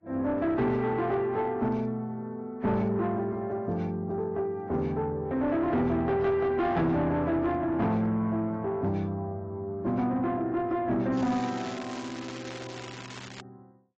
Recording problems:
codec artefacts; AAC, log-spectral distance 3 dB
distortion; soft clipping, signal-to-distortion ratio 10 dB
crackling; from 11 to 13 s; loose cable, SNR 15 dB

